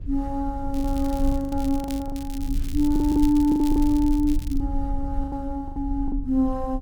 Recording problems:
rumble; below 52 Hz, strongest tone 22 Hz, SNR 7 dB
packet loss; 11% of the sound replaced, filled with the last packet
crackling; from 0.5 to 2 s and from 2 to 4.5 s; loose cable, SNR 19 dB

